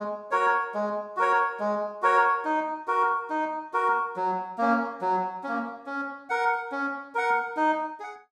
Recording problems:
none

